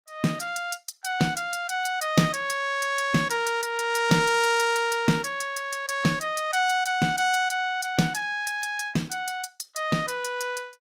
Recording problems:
lossy compression; Opus, log-spectral distance 3 dB, nothing above 19 kHz

